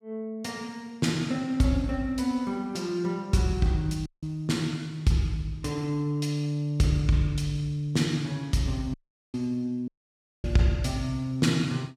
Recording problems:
dropout; at 4 s, at 9 s and at 10 s for 0.5 s

